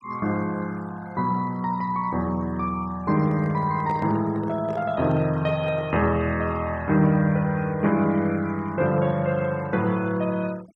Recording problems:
denoising artefacts; signal-to-artefact ratio 24 dB
handling noise; from 3 to 6 s; peak -7 dB vs average level

